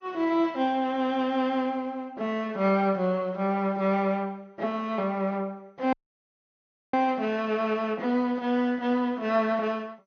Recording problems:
lossy codec; MP2, log-spectral distance 2 dB, nothing above 6.3 kHz
dropout; at 6 s for 1 s

